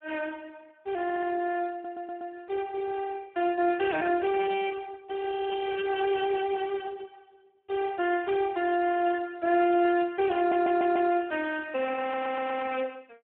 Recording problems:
phone line; 300 Hz to 2.3 kHz, Speex
audio stuttering; 4 times, first at 1 s

